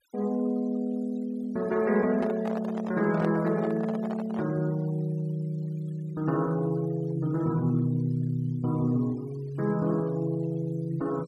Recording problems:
denoising artefacts; signal-to-artefact ratio 24 dB
handling noise; from 2 to 4.5 s; peak -3 dB vs average level

